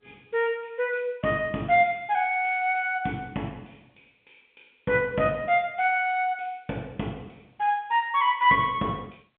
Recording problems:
telephone audio; 150 Hz to 3.5 kHz, G.711

